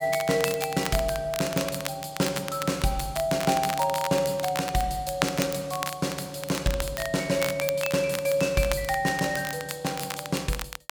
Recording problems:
crackle; vinyl, SNR 8 dB

